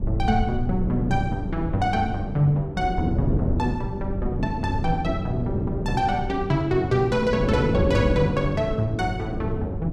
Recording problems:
low-frequency rumble; below 92 Hz, SNR 10 dB
wind on the microphone; below 300 Hz, SNR 5 dB

